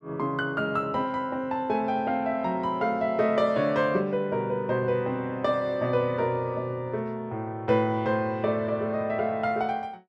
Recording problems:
none

